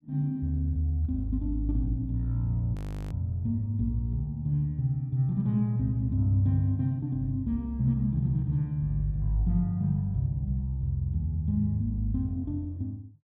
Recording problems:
frozen audio; at 3 s

